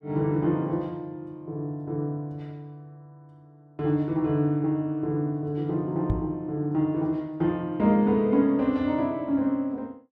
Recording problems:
microphone thump; at 6 s; peak +4 dB vs average level

